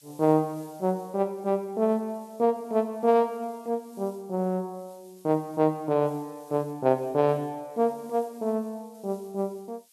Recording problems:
background hiss; slope +5 dB per octave, SNR 28 dB

